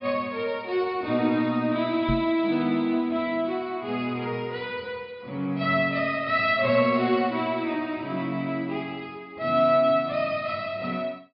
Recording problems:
treble cut off; nothing above 5.5 kHz
microphone thump; at 2 s; peak +2 dB vs average level

